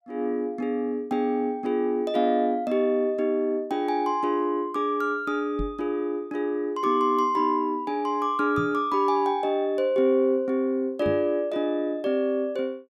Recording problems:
microphone bump; at 5.5 s, at 8.5 s and at 11 s; peak -3 dB vs average level

